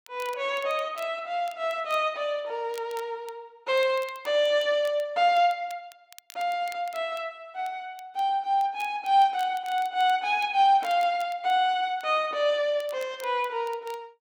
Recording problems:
crackle; vinyl, SNR 25 dB

